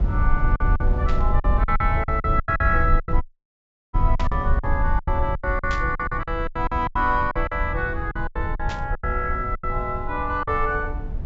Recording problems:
treble cut off; nothing above 8 kHz
rumble; below 74 Hz, SNR 1 dB
packet loss; 15% of the sound replaced, filled with silence
static burst; 4 times, first at 1 s; peak -5 dB vs average level
audio cutting out; at 3 s for 0.5 s

